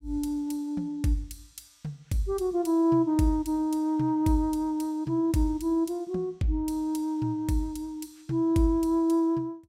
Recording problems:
none

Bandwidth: 16 kHz